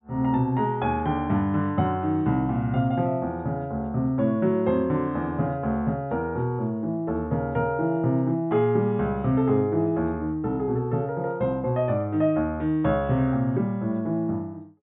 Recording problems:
treble missing; nothing above 4 kHz

